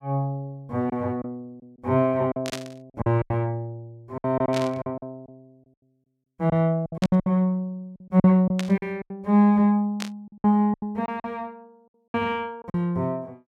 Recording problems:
packet loss; 11% of the sound replaced, filled with silence
burst of static; 5 times, first at 2.5 s; peak -3 dB vs average level

